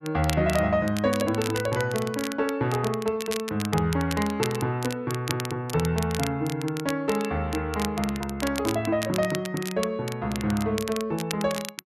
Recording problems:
crackling; vinyl, SNR 10 dB

